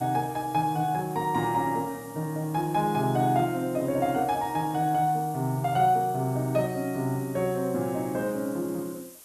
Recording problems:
hiss; SNR 20 dB

